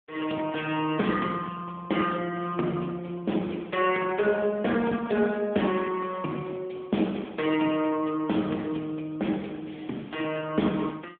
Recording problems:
phone line; 190 Hz to 3.4 kHz, AMR-NB

